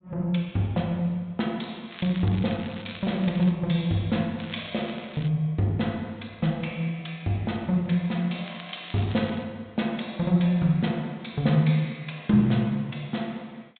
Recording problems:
treble missing; nothing above 4 kHz
crackle; from 2 to 3.5 s, at 4.5 s and at 8.5 s; loose cable, SNR 17 dB

